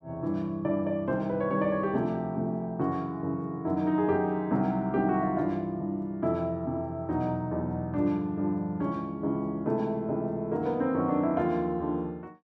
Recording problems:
none

